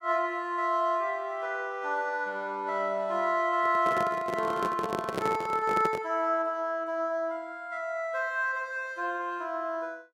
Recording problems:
microphone handling noise; from 3.5 to 6 s; peak +2 dB vs average level

